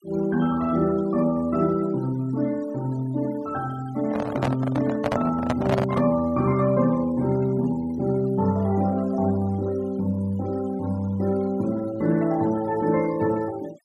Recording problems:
denoising artefacts; signal-to-artefact ratio 20 dB
handling noise; from 4 to 6 s; peak +3 dB vs average level

